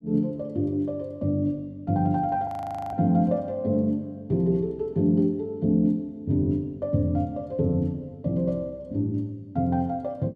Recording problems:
frozen audio; at 2.5 s

